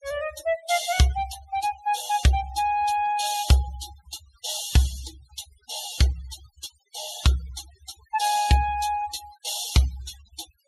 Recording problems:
noise reduction artefacts; signal-to-artefact ratio 16 dB

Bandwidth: 15 kHz